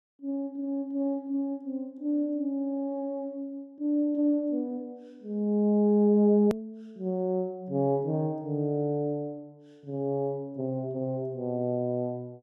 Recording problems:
hard cut with a click; at 6.5 s

